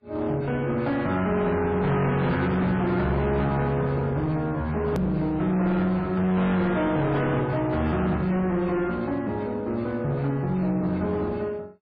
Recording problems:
lossy compression; MP3, log-spectral distance 2 dB, nothing above 13.1 kHz
distortion; hard clipping, uneven, signal-to-distortion ratio 7 dB
edit click; at 5 s

